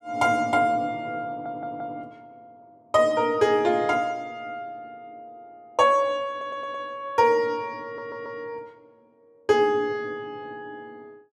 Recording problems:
audio stuttering; at 1.5 s, at 6.5 s and at 8 s

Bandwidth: 12.5 kHz